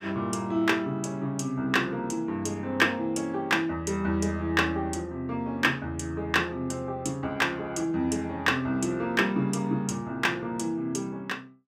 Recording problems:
none

